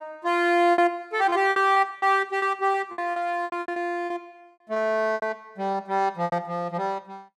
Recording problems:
lost packets; 12% of the sound replaced, filled with repeated pitch periods

